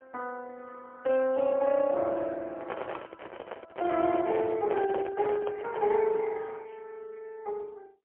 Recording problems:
phone line; 300 Hz to 3.2 kHz, AMR-NB, then MP3
microphone handling noise; from 2.5 to 6 s; peak -1 dB vs average level

